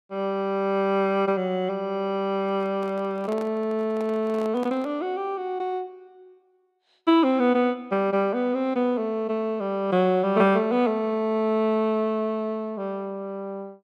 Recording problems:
microphone handling noise; from 2.5 to 5 s; peak -10 dB vs average level

